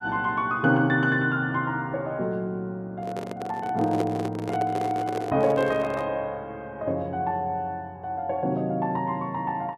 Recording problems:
handling noise; from 3 to 6 s; peak +1 dB vs average level

